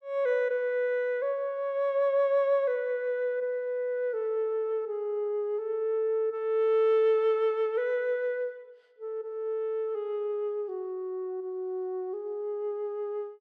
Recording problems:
none

